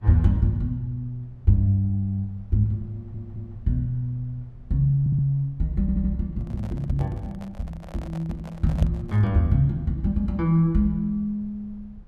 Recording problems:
low-frequency rumble; below 94 Hz, SNR 23 dB
audio stuttering; at 3 s, at 5 s and at 6 s
handling noise; from 6.5 to 9.5 s; peak -9 dB vs average level

